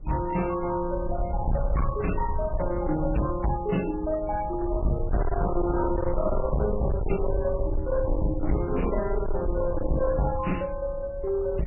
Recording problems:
lossy compression; MP3, log-spectral distance 2 dB, nothing above 2.7 kHz
distorted audio; hard clipping, uneven, signal-to-distortion ratio 8 dB
rumble; below 80 Hz, SNR 5 dB

